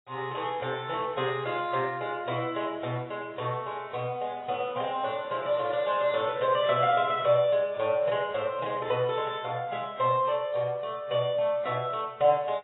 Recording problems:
lossy compression; AAC, log-spectral distance 4 dB, nothing above 3.8 kHz

